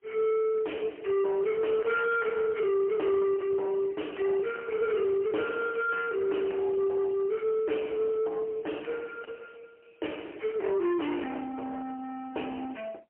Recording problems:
phone line; 300 Hz to 3.1 kHz, AMR-NB, then MP3
distorted audio; soft clipping, signal-to-distortion ratio 11 dB

